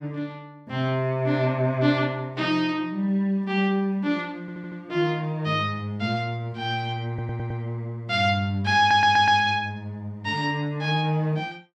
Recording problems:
audio stuttering; at 4.5 s, at 7 s and at 9 s

